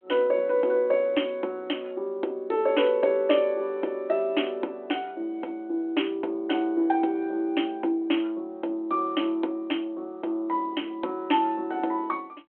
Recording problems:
telephone audio; 240 Hz to 3.3 kHz, G.726

